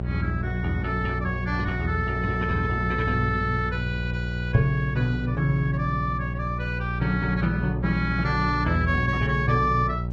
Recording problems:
codec artefacts; Vorbis, log-spectral distance 2 dB, nothing above 10.1 kHz
mains hum; 60 Hz, harmonics up to 780 Hz, SNR 4 dB

